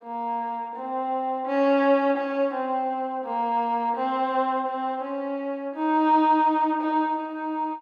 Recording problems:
none

